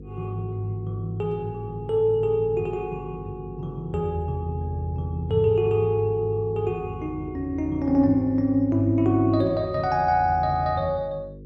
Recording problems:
hum; 50 Hz, harmonics up to 500 Hz, SNR 16 dB

